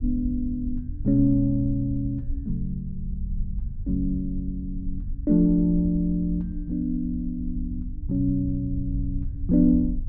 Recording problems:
rumble; below 68 Hz, SNR 9 dB

